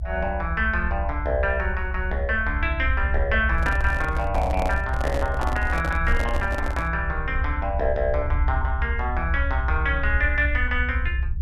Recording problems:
low-frequency rumble; below 72 Hz, strongest tone 62 Hz, SNR 2 dB
handling noise; from 3.5 to 7 s; peak -1 dB vs average level

